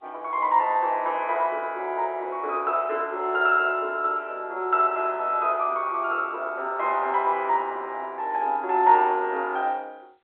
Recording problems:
phone line; 340 Hz to 3.6 kHz, G.711

